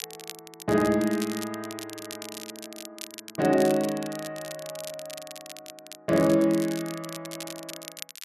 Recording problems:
crackling; vinyl, SNR 14 dB

